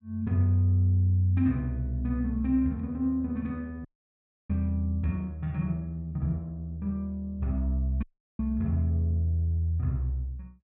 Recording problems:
audio cutting out; at 4 s for 0.5 s and at 8 s

